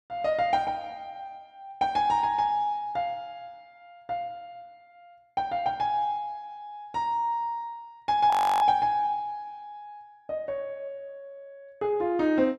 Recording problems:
frozen audio; at 8.5 s

